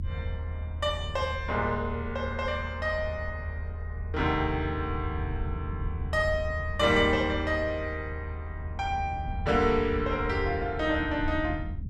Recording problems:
rumble; below 82 Hz, strongest tone 80 Hz, SNR 7 dB

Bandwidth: 14 kHz